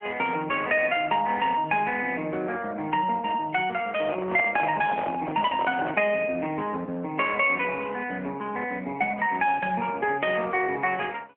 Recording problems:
telephone audio; 220 Hz to 3.3 kHz, AMR-NB
microphone handling noise; from 4 to 6 s; peak -3 dB vs average level

